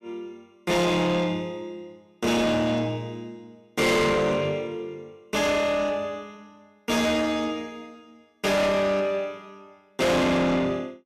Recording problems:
distorted audio; soft clipping, signal-to-distortion ratio 6 dB

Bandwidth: 14.5 kHz